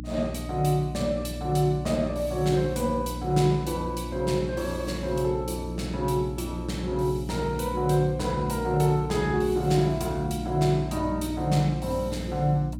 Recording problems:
hum; 60 Hz, harmonics up to 300 Hz, SNR 9 dB

